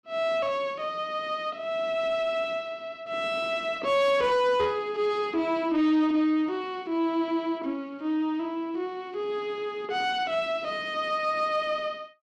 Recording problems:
distorted audio; soft clipping, signal-to-distortion ratio 11 dB

